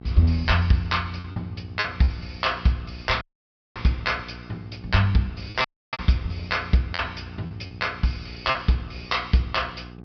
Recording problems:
treble missing; nothing above 5.5 kHz
hum; 60 Hz, harmonics up to 1.3 kHz, SNR 18 dB
packet loss; 5% of the sound replaced, filled with repeated pitch periods
audio cutting out; at 3 s for 0.5 s and at 5.5 s

